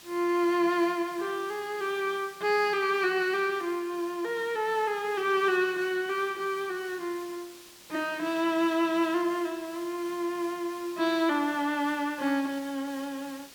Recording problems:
hiss; slope 0 dB per octave, SNR 20 dB

